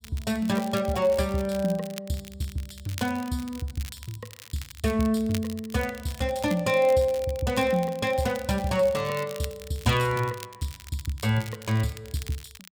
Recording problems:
crackling; vinyl, SNR 17 dB

